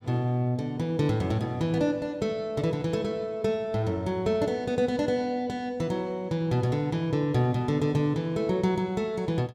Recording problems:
none

